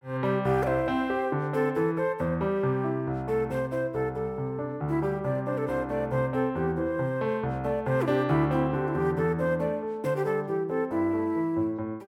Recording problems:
none

